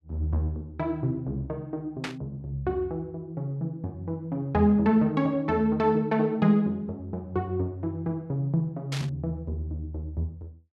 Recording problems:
static burst; at 2 s and at 9 s; peak -1 dB vs average level

